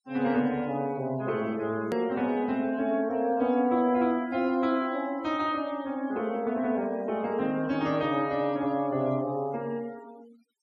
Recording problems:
denoising artefacts; signal-to-artefact ratio 24 dB
click at an edit; at 2 s

